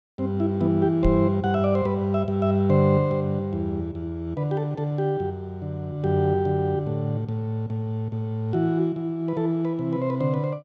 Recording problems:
knock on the microphone; at 1 s; peak +2 dB vs average level

